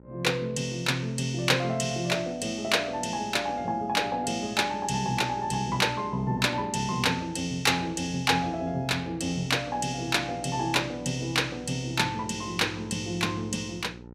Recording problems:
hum; 60 Hz, harmonics up to 1.4 kHz, SNR 20 dB

